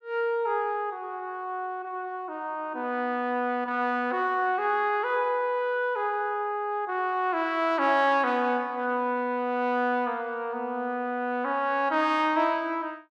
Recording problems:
none

